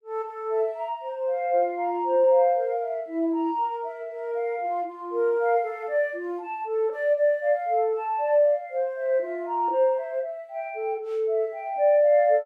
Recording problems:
none

